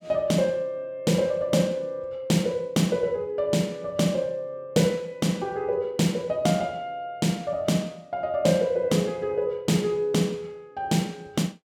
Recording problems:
none

